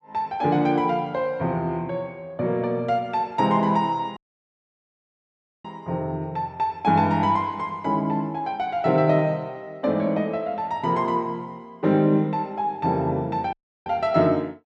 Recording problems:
dropout; at 4 s for 1.5 s and at 14 s

